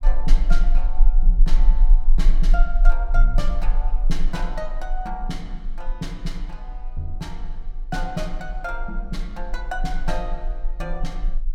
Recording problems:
rumble; below 32 Hz, strongest tone 24 Hz, SNR -8 dB

